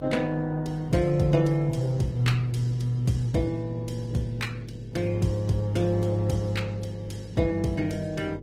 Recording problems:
lossy compression; Opus, then Opus, log-spectral distance 2 dB
hum; 50 Hz, harmonics up to 550 Hz, SNR 18 dB

